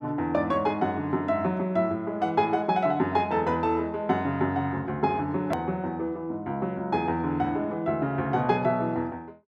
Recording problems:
hard cut with a click; at 5.5 s

